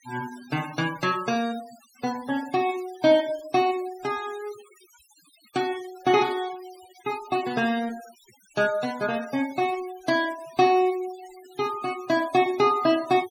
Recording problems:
noise reduction artefacts; signal-to-artefact ratio 20 dB

